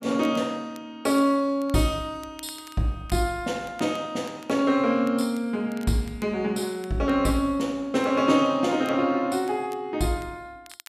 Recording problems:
crackle; vinyl, SNR 26 dB

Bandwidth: 14.5 kHz